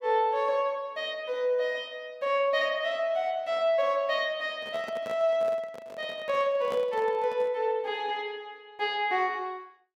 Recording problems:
microphone handling noise; from 4.5 to 7.5 s; peak -5 dB vs average level

